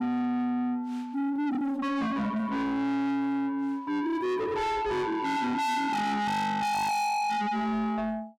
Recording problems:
distortion; soft clipping, signal-to-distortion ratio 6 dB

